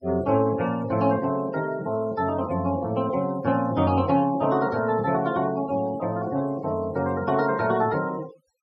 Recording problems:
noise reduction artefacts; signal-to-artefact ratio 22 dB

